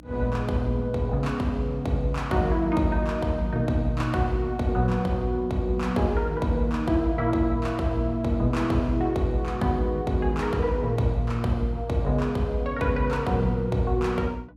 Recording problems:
electrical hum; 60 Hz, harmonics up to 300 Hz, SNR 24 dB

